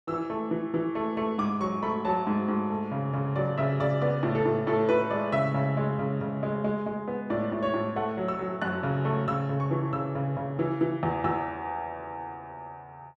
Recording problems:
none

